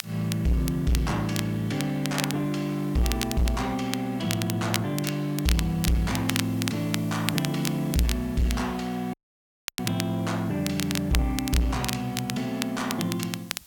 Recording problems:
distorted audio; soft clipping, signal-to-distortion ratio 7 dB
background hiss; slope +2 dB per octave, SNR 23 dB
crackling; vinyl, SNR 7 dB
dropout; at 9 s for 0.5 s

